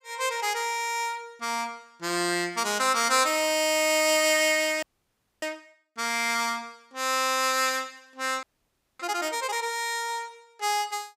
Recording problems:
audio freezing; at 5 s for 0.5 s and at 8.5 s for 0.5 s

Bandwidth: 15.5 kHz